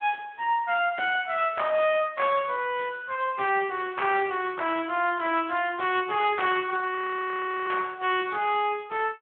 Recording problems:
telephone audio; 240 Hz to 3.3 kHz, Speex
audio freezing; at 7 s for 0.5 s

